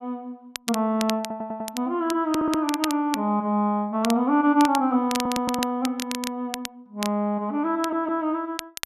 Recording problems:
crackle; vinyl, SNR 10 dB
stutter; 4 times, first at 1 s

